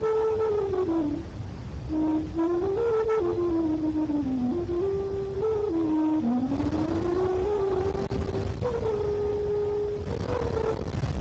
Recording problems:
lossy compression; Speex, log-spectral distance 3 dB, nothing above 16.5 kHz
distorted audio; hard clipping, signal-to-distortion ratio 7 dB
wind noise; below 490 Hz, SNR 8 dB

